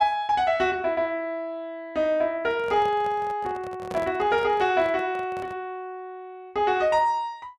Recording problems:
handling noise; from 2.5 to 5.5 s; peak -7 dB vs average level

